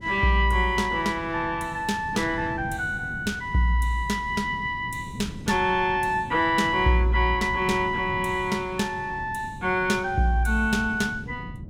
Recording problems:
wind noise; below 220 Hz, SNR 15 dB

